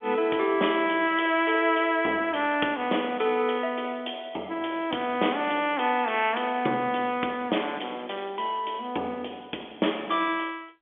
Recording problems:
telephone audio; 220 Hz to 3.5 kHz, G.711

